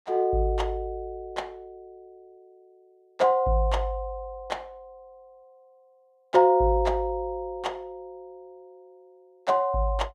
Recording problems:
none

